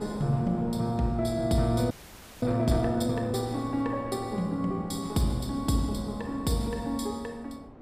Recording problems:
wind noise; below 610 Hz, SNR 15 dB
frozen audio; at 2 s for 0.5 s

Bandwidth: 15 kHz